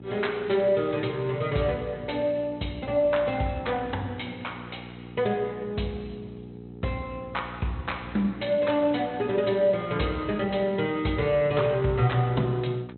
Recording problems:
treble cut off; nothing above 4 kHz
lossy compression; Speex, log-spectral distance 3 dB
hum; 60 Hz, harmonics up to 900 Hz, SNR 16 dB

